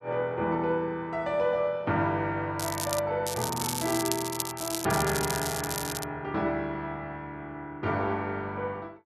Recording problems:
crackling; at 2.5 s and from 3.5 to 6 s; loose cable, SNR 3 dB

